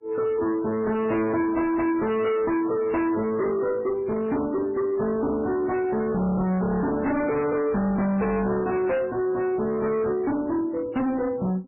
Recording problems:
codec artefacts; MP3, then AAC, log-spectral distance 2 dB, nothing above 2.4 kHz
distorted audio; hard clipping, uneven, signal-to-distortion ratio 6 dB

